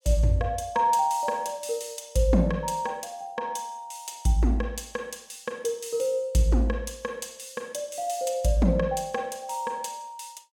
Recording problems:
none

